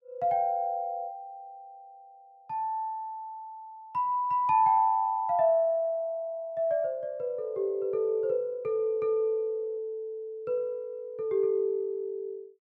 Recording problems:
none

